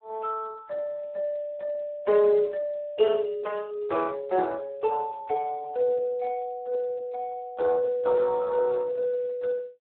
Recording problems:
telephone audio; 300 Hz to 2.8 kHz, Speex

